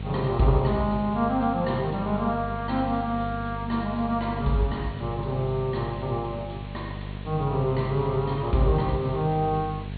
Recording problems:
treble cut off; nothing above 4.4 kHz
hum; 50 Hz, harmonics up to 700 Hz, SNR 9 dB
background hiss; SNR 21 dB

